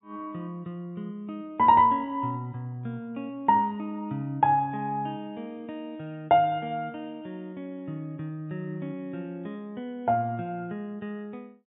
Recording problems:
low-pass filter; nothing above 4 kHz

